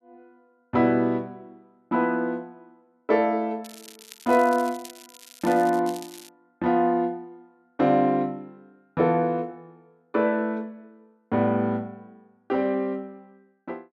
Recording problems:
crackle; from 3.5 to 6.5 s; loose cable, SNR 20 dB

